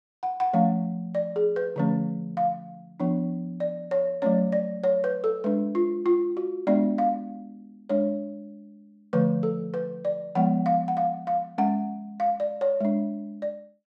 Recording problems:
none

